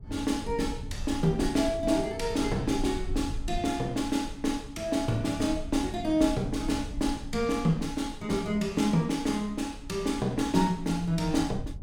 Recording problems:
low-frequency rumble; below 76 Hz, SNR 13 dB

